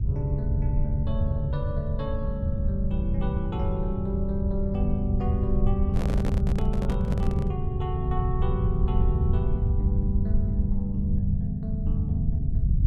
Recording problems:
low-frequency rumble; below 96 Hz, SNR -3 dB
microphone handling noise; from 6 to 7.5 s; peak 0 dB vs average level

